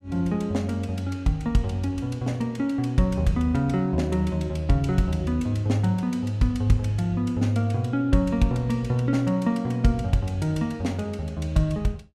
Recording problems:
none

